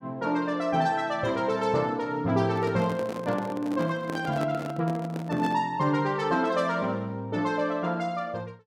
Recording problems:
microphone handling noise; from 2.5 to 5.5 s; peak -3 dB vs average level

